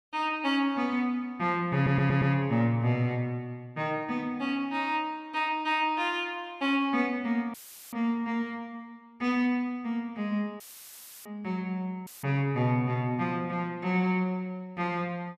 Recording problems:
audio stuttering; at 2 s
dropout; at 7.5 s, at 11 s for 0.5 s and at 12 s; filled with static

